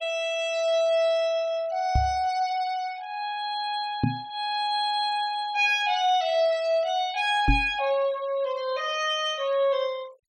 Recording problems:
noise reduction artefacts; signal-to-artefact ratio 23 dB
microphone thump; at 2 s, at 4 s and at 7.5 s; peak +6 dB vs average level

